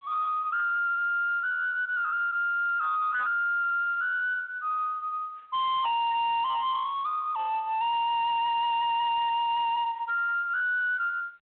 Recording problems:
telephone audio; 990 Hz to 2.1 kHz, G.726
distortion; soft clipping, signal-to-distortion ratio 5 dB

